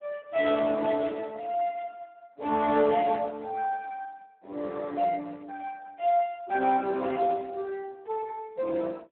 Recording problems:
telephone audio; 260 Hz to 2.6 kHz, Speex

